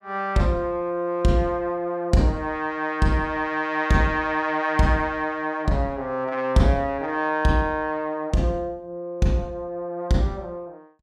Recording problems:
none

